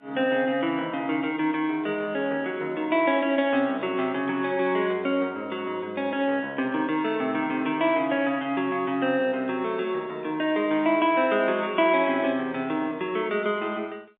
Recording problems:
telephone audio; 220 Hz to 3.7 kHz, G.711

